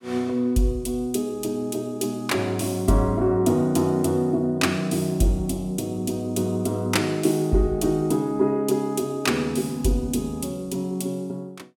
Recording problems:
none

